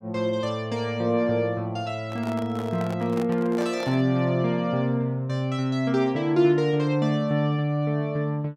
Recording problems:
microphone handling noise; from 2 to 4 s; peak -7 dB vs average level

